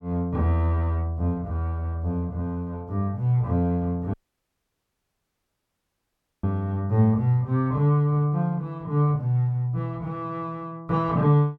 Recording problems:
audio cutting out; at 4 s for 2.5 s

